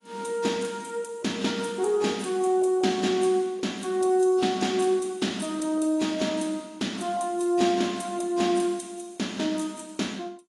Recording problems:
lossy compression; AAC, log-spectral distance 4 dB, nothing above 10.1 kHz

